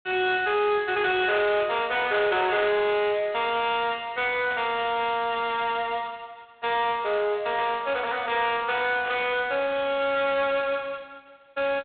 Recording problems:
phone line; 300 Hz to 3.7 kHz, G.726
distortion; hard clipping, uneven, signal-to-distortion ratio 8 dB
burst of static; 4 times, first at 1.5 s; peak -8 dB vs average level

